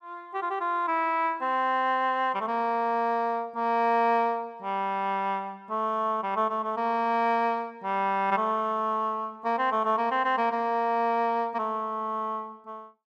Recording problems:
none

